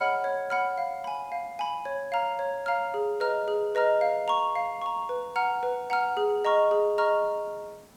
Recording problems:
hiss; slope -5 dB per octave, SNR 28 dB

